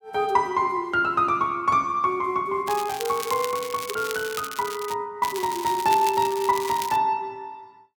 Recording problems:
crackle; from 2.5 to 5 s and from 5 to 7 s; loose cable, SNR 11 dB

